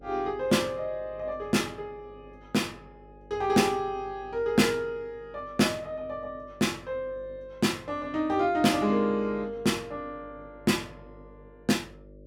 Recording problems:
hum; 50 Hz, harmonics up to 600 Hz, SNR 24 dB

